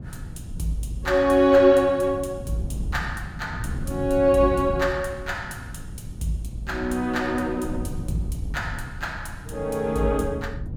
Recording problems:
wind on the microphone; below 160 Hz, SNR 11 dB

